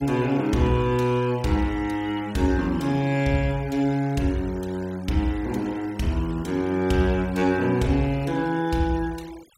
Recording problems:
noise reduction artefacts; signal-to-artefact ratio 23 dB

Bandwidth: 16 kHz